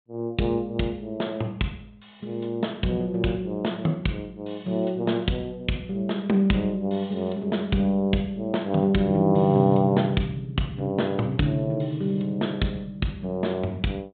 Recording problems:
treble missing; nothing above 4 kHz

